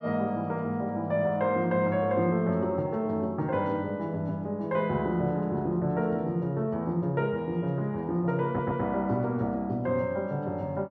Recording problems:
stutter; at 8.5 s

